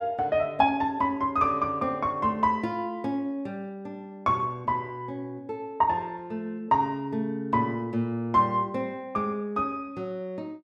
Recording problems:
none

